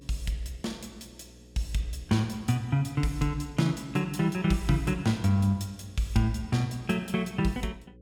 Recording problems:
electrical hum; 60 Hz, harmonics up to 540 Hz, SNR 24 dB

